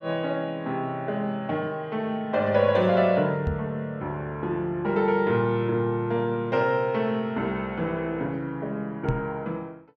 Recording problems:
knock on the microphone; at 3.5 s and at 9 s; peak +2 dB vs average level

